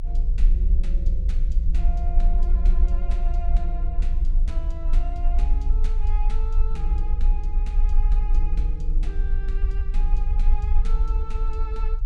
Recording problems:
rumble; below 44 Hz, strongest tone 26 Hz, SNR -14 dB

